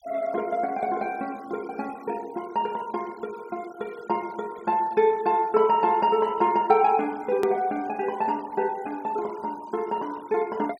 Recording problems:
denoising artefacts; signal-to-artefact ratio 25 dB
edit click; at 7.5 s

